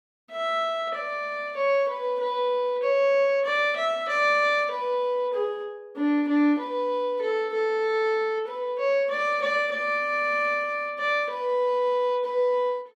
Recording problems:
none

